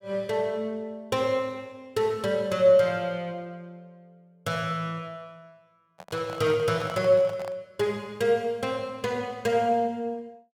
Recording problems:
handling noise; from 6 to 7.5 s; peak -7 dB vs average level

